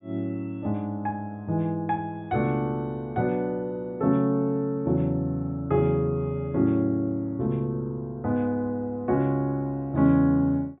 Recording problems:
low-pass filter; nothing above 4 kHz

